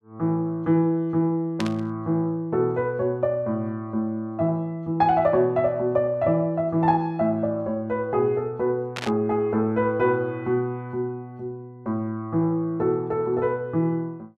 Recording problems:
static burst; at 1.5 s and at 9 s; peak -3 dB vs average level

